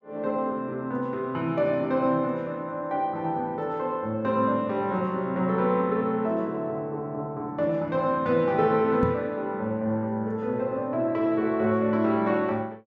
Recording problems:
microphone thump; at 9 s; peak +3 dB vs average level

